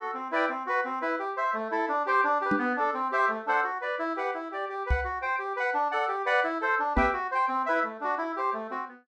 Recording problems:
microphone bump; at 2.5 s, at 5 s and at 7 s; peak +4 dB vs average level

